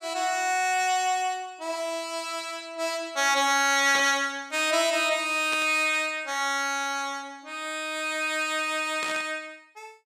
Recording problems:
static burst; at 4 s, at 5.5 s and at 9 s; peak -5 dB vs average level

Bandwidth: 14.5 kHz